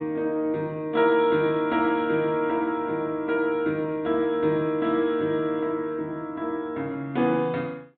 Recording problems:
low-pass filter; nothing above 4 kHz

